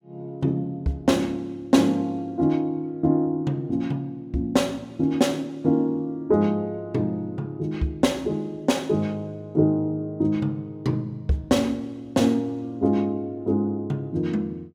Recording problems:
none

